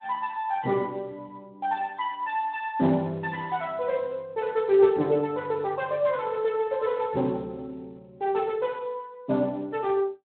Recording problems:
phone line; 170 Hz to 3.9 kHz, Speex

